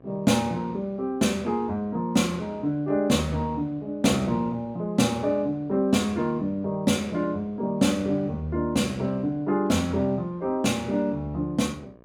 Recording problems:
electrical hum; 60 Hz, harmonics up to 1.8 kHz, SNR 28 dB

